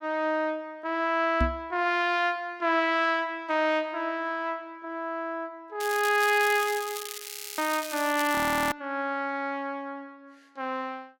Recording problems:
microphone bump; at 1.5 s; peak +4 dB vs average level
crackle; from 6 to 8.5 s; loose cable, SNR 9 dB
audio freezing; at 7.5 s and at 8.5 s

